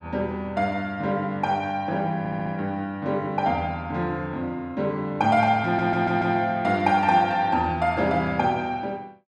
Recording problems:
stutter; at 2 s and at 5.5 s

